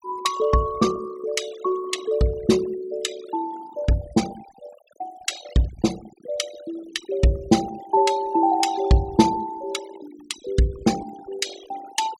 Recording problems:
denoising artefacts; signal-to-artefact ratio 16 dB

